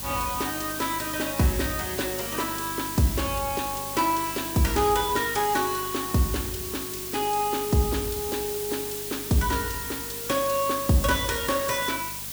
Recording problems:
electrical hum; 50 Hz, harmonics up to 1.1 kHz, SNR 19 dB
hiss; slope +1 dB per octave, SNR 5 dB

